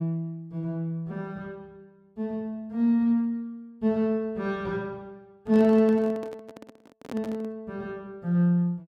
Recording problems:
microphone handling noise; from 5.5 to 7.5 s; peak -7 dB vs average level

